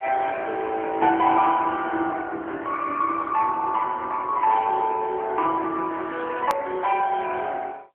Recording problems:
telephone audio; 280 Hz to 3.4 kHz, AMR-NB
hard cut with a click; at 6.5 s

